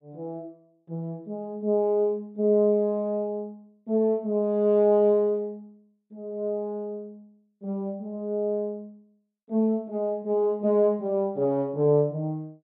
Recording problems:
none

